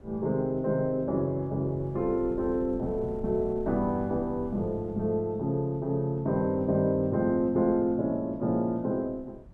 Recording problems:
wind on the microphone; below 160 Hz, SNR 19 dB

